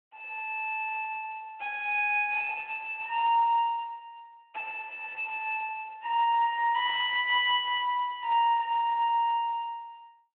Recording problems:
phone line; 300 Hz to 3.3 kHz, Speex

